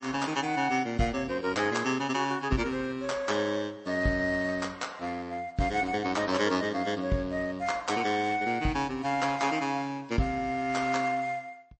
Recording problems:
codec artefacts; MP3, log-spectral distance 3 dB, nothing above 8.2 kHz

